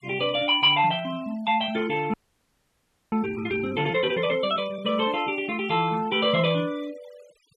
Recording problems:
denoising artefacts; signal-to-artefact ratio 22 dB
frozen audio; at 2 s for 1 s

